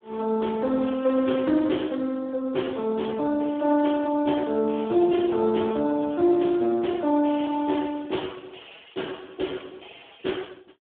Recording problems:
telephone audio; 190 Hz to 3.6 kHz, Speex

